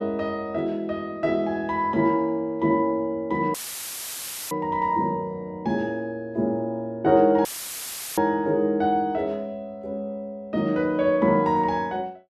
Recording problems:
audio cutting out; at 3.5 s for 1 s and at 7.5 s for 0.5 s; filled with static

